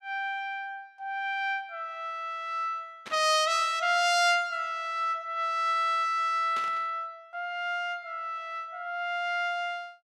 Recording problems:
burst of static; at 3 s and at 6.5 s; peak -8 dB vs average level

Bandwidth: 15.5 kHz